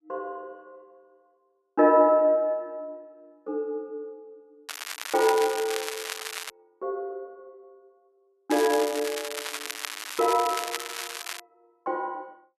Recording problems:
crackle; from 4.5 to 6.5 s and from 8.5 to 11 s; loose cable, SNR 8 dB

